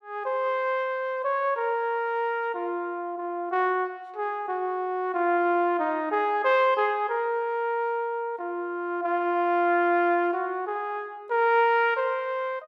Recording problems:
none

